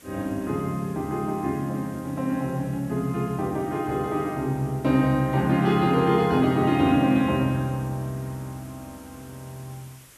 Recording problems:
background hiss; slope -1 dB per octave, SNR 25 dB

